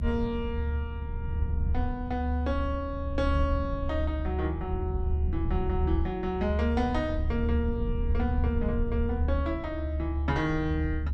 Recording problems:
rumble; below 76 Hz, strongest tone 74 Hz, SNR -1 dB

